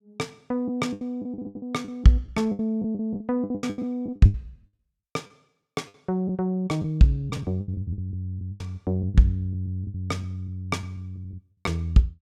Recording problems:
lost packets; 16% of the sound replaced, filled with the last packet

